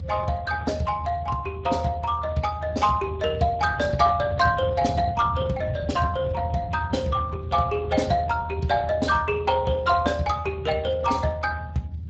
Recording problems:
lossy compression; Speex, log-spectral distance 4 dB, nothing above 7.6 kHz
rumble; below 130 Hz, strongest tone 80 Hz, SNR 9 dB

